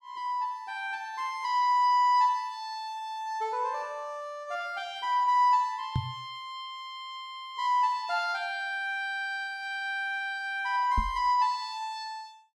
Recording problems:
knock on the microphone; at 6 s and at 11 s; peak +3 dB vs average level

